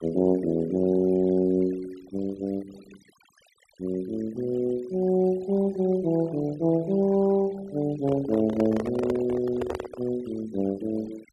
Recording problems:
noise reduction artefacts; signal-to-artefact ratio 22 dB
microphone handling noise; from 8 to 10 s; peak -2 dB vs average level

